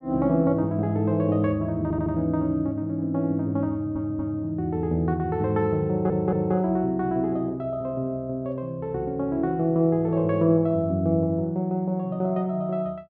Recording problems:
audio stuttering; at 2 s, at 3.5 s and at 6 s

